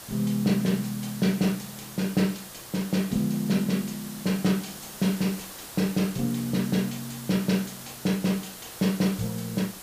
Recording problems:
background hiss; slope -2 dB per octave, SNR 12 dB

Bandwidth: 15 kHz